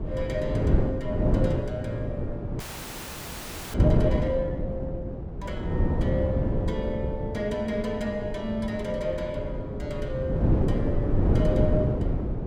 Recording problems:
wind on the microphone; below 260 Hz, SNR -4 dB
audio freezing; at 2.5 s for 1 s

